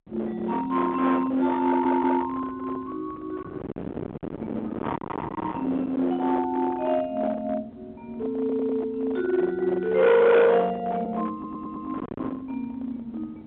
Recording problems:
phone line; 950 Hz to 2.7 kHz, G.711
distortion; hard clipping, signal-to-distortion ratio 5 dB
wind on the microphone; below 930 Hz, SNR 13 dB
audio stuttering; at 1.5 s, at 8.5 s and at 11 s

